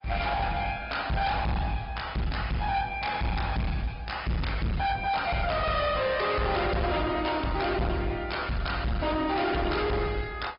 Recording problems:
treble missing; nothing above 5.2 kHz
lossy compression; Opus, log-spectral distance 4 dB
distortion; hard clipping, signal-to-distortion ratio 7 dB

